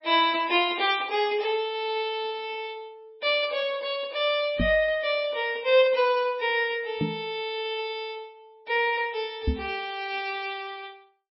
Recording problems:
lossy codec; MP3, log-spectral distance 2 dB, nothing above 4.9 kHz
microphone bump; at 4.5 s, at 7 s and at 9.5 s; peak +3 dB vs average level

